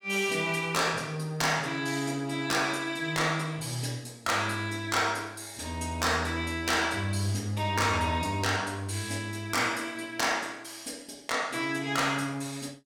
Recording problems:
distortion; hard clipping, signal-to-distortion ratio 11 dB

